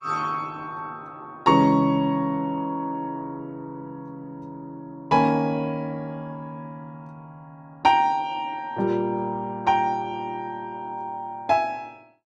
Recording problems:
lossy codec; Opus, log-spectral distance 2 dB

